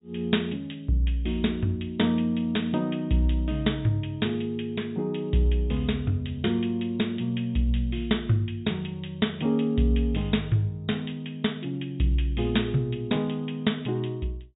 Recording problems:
treble missing; nothing above 4 kHz

